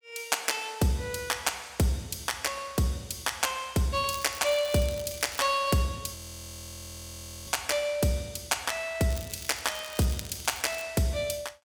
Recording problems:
crackling; from 4 to 5.5 s and from 9 to 11 s; loose cable, SNR 14 dB
audio freezing; at 6 s for 1.5 s

